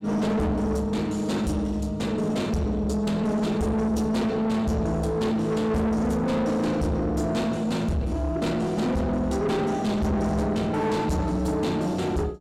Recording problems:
distortion; soft clipping, signal-to-distortion ratio 8 dB

